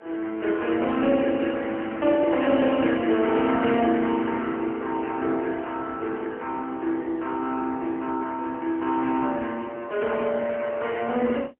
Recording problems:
phone line; 240 Hz to 3.2 kHz, AMR-NB, then MP3

